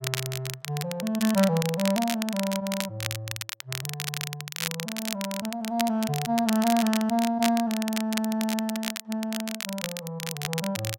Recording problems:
crackling; vinyl, SNR 6 dB

